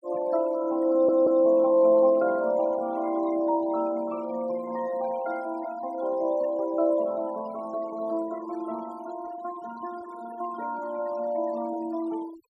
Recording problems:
denoising artefacts; signal-to-artefact ratio 21 dB
stutter; at 1 s

